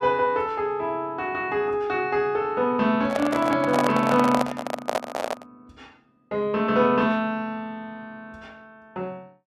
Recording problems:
handling noise; from 3 to 5.5 s; peak +4 dB vs average level

